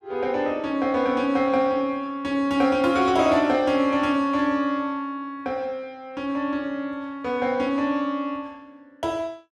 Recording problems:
none

